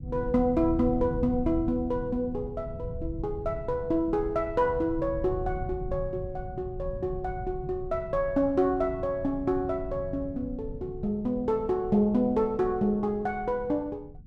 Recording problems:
low-frequency rumble; below 140 Hz, SNR 11 dB

